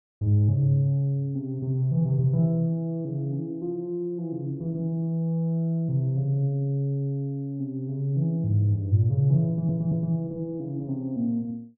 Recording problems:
audio stuttering; at 9.5 s

